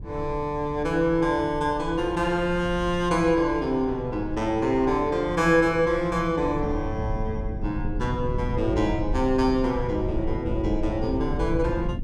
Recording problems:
wind noise; below 120 Hz, SNR 9 dB

